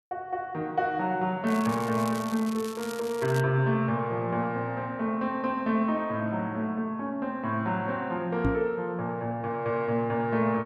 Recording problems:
crackle; from 1.5 to 3.5 s; loose cable, SNR 15 dB
microphone bump; at 8.5 s; peak +5 dB vs average level

